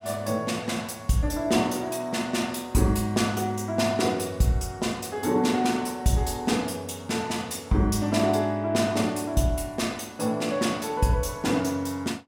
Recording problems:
none

